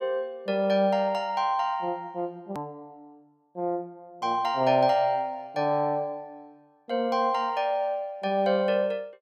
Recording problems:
hard cut with a click; at 2.5 s

